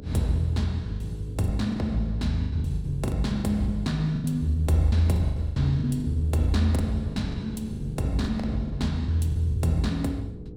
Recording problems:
electrical hum; 60 Hz, harmonics up to 480 Hz, SNR 18 dB
wind on the microphone; below 190 Hz, SNR 16 dB
packet loss; 14% of the sound replaced, filled with the last packet

